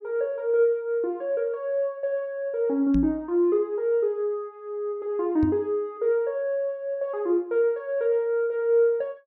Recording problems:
knock on the microphone; at 3 s and at 5.5 s; peak 0 dB vs average level

